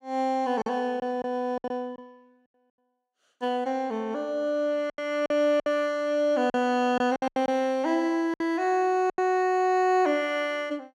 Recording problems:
packet loss; 8% of the sound replaced, filled with silence

